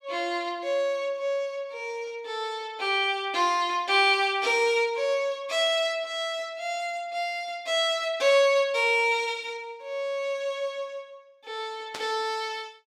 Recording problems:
burst of static; at 12 s; peak -6 dB vs average level

